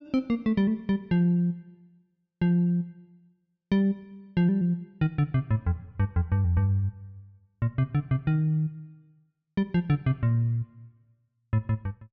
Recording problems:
low-pass filter; nothing above 7.8 kHz

